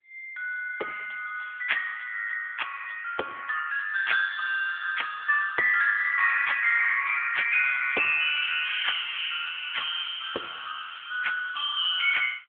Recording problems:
phone line; 370 Hz to 3.4 kHz, AMR-NB

